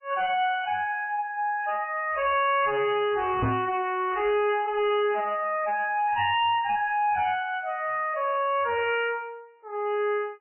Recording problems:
lossy codec; MP3, log-spectral distance 3 dB, nothing above 2.6 kHz
distortion; hard clipping, signal-to-distortion ratio 10 dB
microphone bump; at 3.5 s; peak +2 dB vs average level

